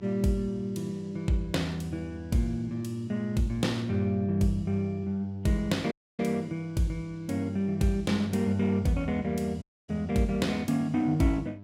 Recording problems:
hum; 50 Hz, harmonics up to 1 kHz, SNR 19 dB
dropout; at 6 s and at 9.5 s

